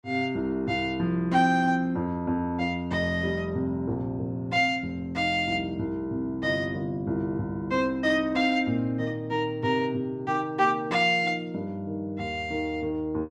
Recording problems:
none

